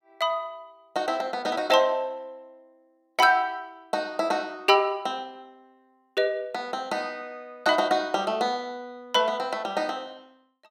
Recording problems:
none

